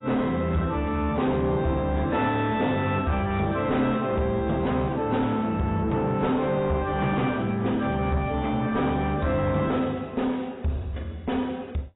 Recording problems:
lossy codec; AAC, log-spectral distance 3 dB, nothing above 3.8 kHz
distorted audio; soft clipping, signal-to-distortion ratio 11 dB

